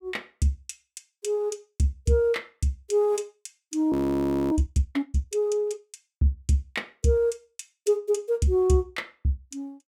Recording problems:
audio freezing; at 4 s for 0.5 s

